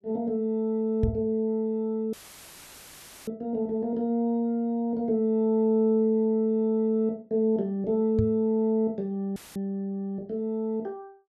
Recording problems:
microphone thump; at 1 s and at 8 s; peak +4 dB vs average level
dropout; at 2 s for 1 s and at 9.5 s; filled with static

